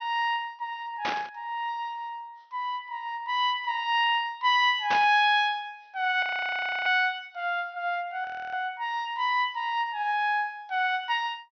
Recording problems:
treble missing; nothing above 6.2 kHz
static burst; at 1 s and at 5 s; peak 0 dB vs average level
audio freezing; at 6 s for 0.5 s and at 8.5 s

